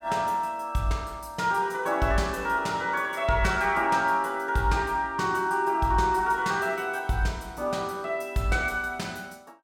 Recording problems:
none

